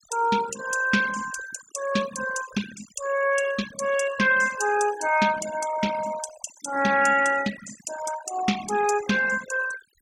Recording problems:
noise reduction artefacts; signal-to-artefact ratio 12 dB

